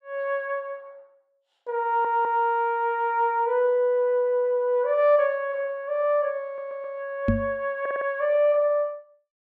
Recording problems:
stutter; at 2 s, at 6.5 s and at 8 s
microphone bump; at 7.5 s; peak +5 dB vs average level

